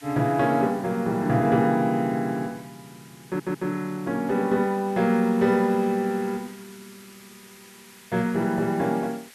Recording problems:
background hiss; SNR 24 dB
audio stuttering; at 3.5 s

